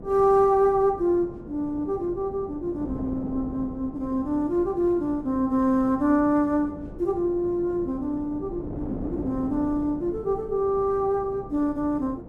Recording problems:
wind noise; below 390 Hz, SNR 14 dB

